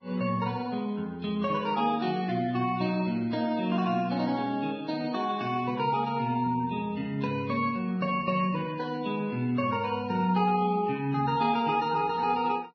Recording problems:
lossy compression; Vorbis, log-spectral distance 3 dB, nothing above 6 kHz

